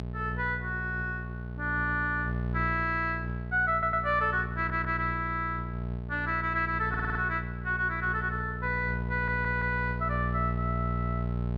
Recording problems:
hum; 60 Hz, harmonics up to 840 Hz, SNR 5 dB
audio stuttering; 4 times, first at 3.5 s

